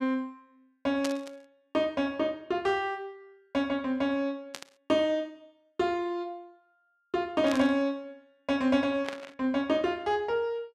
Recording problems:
burst of static; 4 times, first at 1 s; peak -1 dB vs average level

